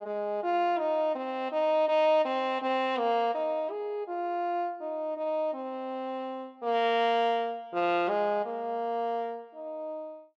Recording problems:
none

